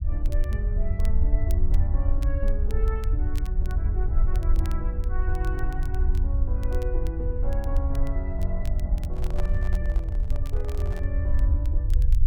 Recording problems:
rumble; below 64 Hz, SNR -10 dB
crackling; vinyl, SNR 16 dB
microphone handling noise; from 9 to 11 s; peak +4 dB vs average level

